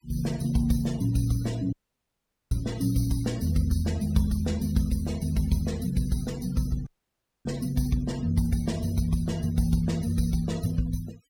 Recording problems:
denoising artefacts; signal-to-artefact ratio 19 dB
audio cutting out; at 1.5 s for 1 s and at 7 s for 0.5 s

